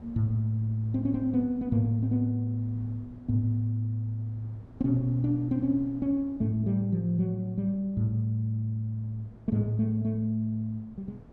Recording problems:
wind noise; below 280 Hz, SNR 23 dB

